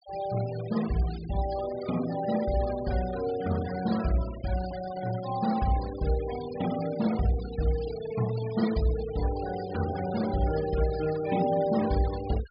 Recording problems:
treble missing; nothing above 5.1 kHz
denoising artefacts; signal-to-artefact ratio 14 dB

